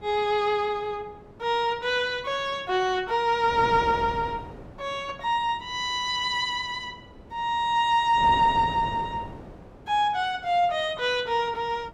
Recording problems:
wind on the microphone; below 580 Hz, SNR 17 dB

